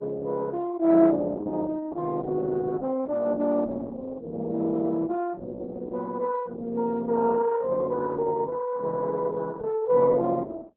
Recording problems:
codec artefacts; Opus, log-spectral distance 3 dB

